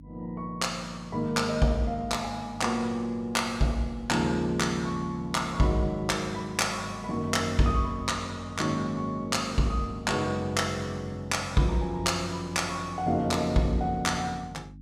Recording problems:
electrical hum; 50 Hz, harmonics up to 300 Hz, SNR 20 dB

